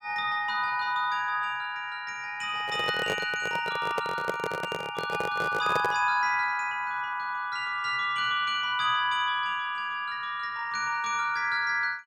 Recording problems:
microphone handling noise; from 2.5 to 6 s; peak +1 dB vs average level

